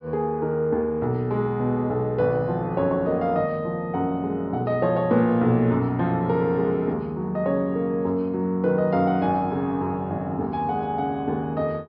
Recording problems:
low-pass filter; nothing above 5.5 kHz

